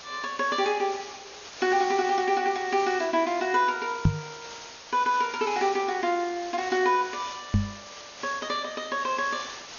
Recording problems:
codec artefacts; MP2, log-spectral distance 15 dB, nothing above 6.7 kHz
hiss; slope -1 dB per octave, SNR 14 dB
microphone bump; at 4 s and at 7.5 s; peak +9 dB vs average level

